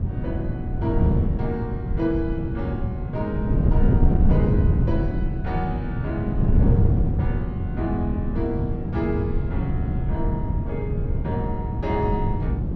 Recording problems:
wind noise; below 160 Hz, SNR -5 dB

